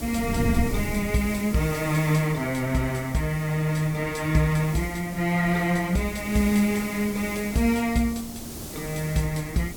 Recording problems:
hiss; SNR 13 dB
wind noise; below 200 Hz, SNR 12 dB

